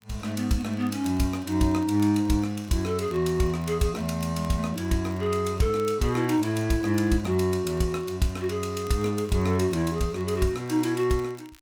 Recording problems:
crackling; vinyl, SNR 28 dB

